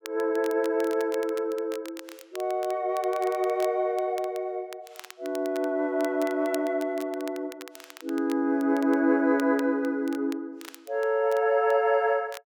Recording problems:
crackling; vinyl, SNR 21 dB

